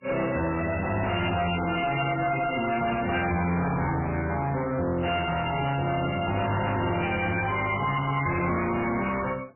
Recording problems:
lossy codec; MP3, log-spectral distance 9 dB, nothing above 2.8 kHz
distorted audio; hard clipping, uneven, signal-to-distortion ratio 5 dB

